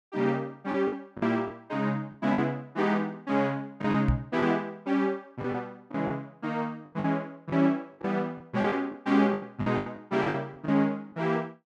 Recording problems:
lost packets; 8% of the sound replaced, filled with the last packet
knock on the microphone; at 4 s; peak +7 dB vs average level

